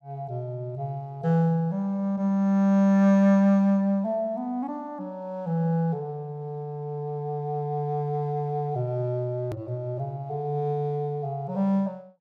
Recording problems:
edit click; at 9.5 s

